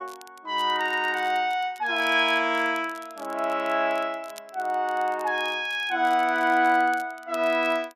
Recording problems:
crackling; vinyl, SNR 26 dB

